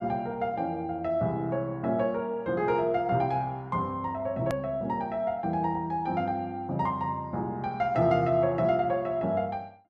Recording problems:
edit click; at 4.5 s

